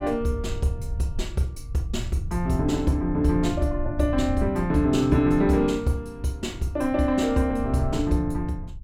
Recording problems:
low-frequency rumble; below 96 Hz, SNR 10 dB

